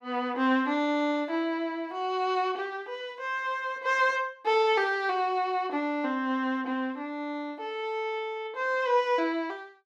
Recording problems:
none

